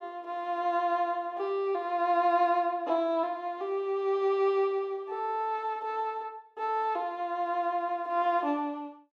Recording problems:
none

